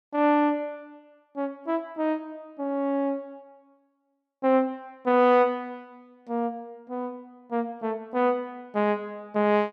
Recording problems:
none

